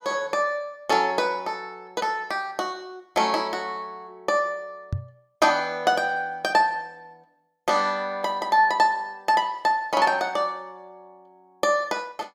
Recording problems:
knock on the microphone; at 5 s; peak 0 dB vs average level

